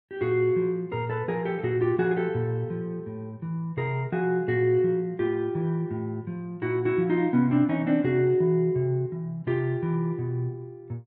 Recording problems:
none

